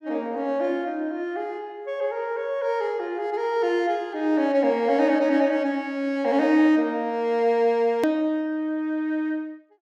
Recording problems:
edit click; at 8 s

